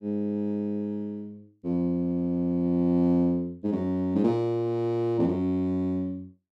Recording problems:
none

